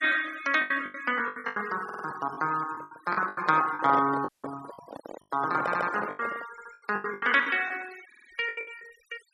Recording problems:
noise reduction artefacts; signal-to-artefact ratio 19 dB
lost packets; 16% of the sound replaced, filled with the last packet
audio stuttering; 4 times, first at 2 s
handling noise; from 2.5 to 6.5 s; peak -1 dB vs average level
dropout; at 4.5 s

